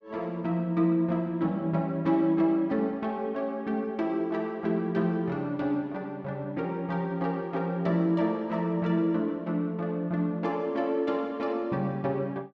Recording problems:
none

